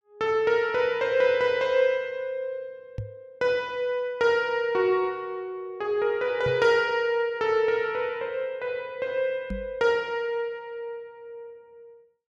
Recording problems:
microphone thump; at 3 s, at 6.5 s and at 9.5 s; peak -4 dB vs average level

